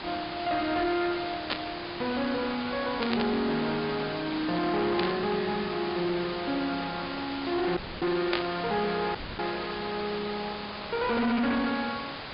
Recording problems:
treble missing; nothing above 5 kHz
distortion; soft clipping, signal-to-distortion ratio 7 dB
hiss; SNR 5 dB
static burst; 4 times, first at 1.5 s; peak 0 dB vs average level
audio cutting out; at 8 s and at 9 s

